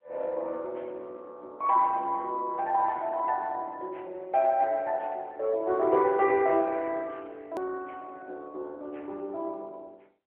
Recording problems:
telephone audio; 340 Hz to 3.2 kHz, AMR-NB
click at an edit; at 7.5 s

